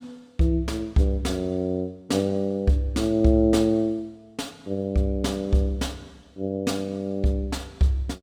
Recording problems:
none

